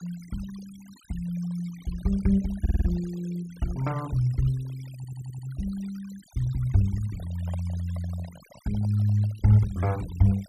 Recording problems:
noise reduction artefacts; signal-to-artefact ratio 22 dB
audio stuttering; at 2.5 s and at 5 s
microphone handling noise; from 7 to 9.5 s; peak -9 dB vs average level

